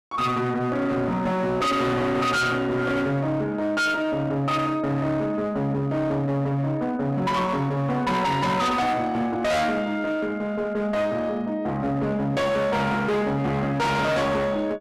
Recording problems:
distortion; hard clipping, uneven, signal-to-distortion ratio 6 dB

